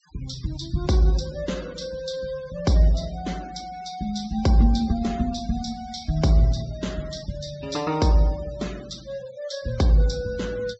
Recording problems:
treble missing; nothing above 7.5 kHz
denoising artefacts; signal-to-artefact ratio 21 dB

